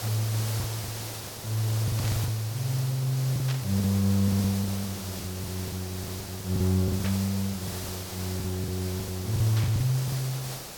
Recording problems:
background hiss; SNR 8 dB
packet loss; 13% of the sound replaced, filled with the last packet
burst of static; 4 times, first at 2 s; peak -4 dB vs average level

